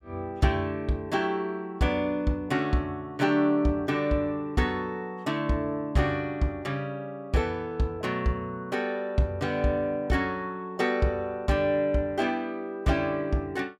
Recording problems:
none

